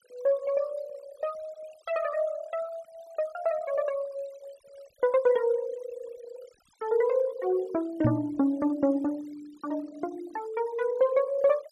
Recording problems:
denoising artefacts; signal-to-artefact ratio 23 dB
microphone bump; at 8 s; peak +6 dB vs average level

